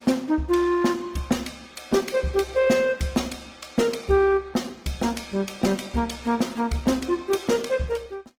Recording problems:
lossy codec; Opus, log-spectral distance 4 dB, nothing above 19 kHz

